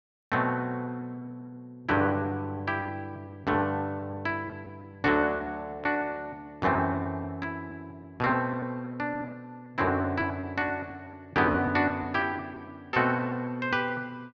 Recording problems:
packet loss; 8% of the sound replaced, filled with repeated pitch periods

